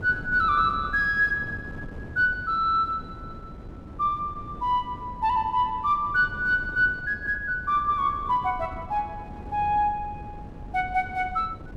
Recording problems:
wind on the microphone; below 270 Hz, SNR 16 dB

